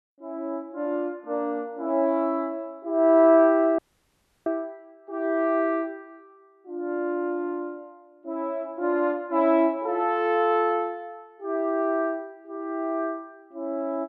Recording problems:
audio cutting out; at 4 s for 0.5 s

